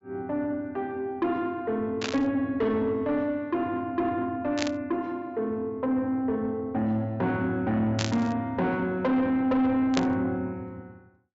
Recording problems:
treble cut off; nothing above 8 kHz
distorted audio; soft clipping, signal-to-distortion ratio 11 dB
static burst; 4 times, first at 2 s; peak +2 dB vs average level

